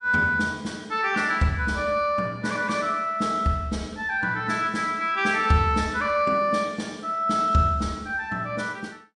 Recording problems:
lossy compression; MP3, log-spectral distance 2 dB, nothing above 9 kHz

